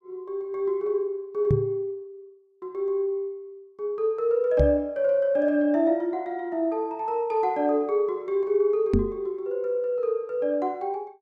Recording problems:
microphone thump; at 1.5 s, at 4.5 s and at 9 s; peak +6 dB vs average level

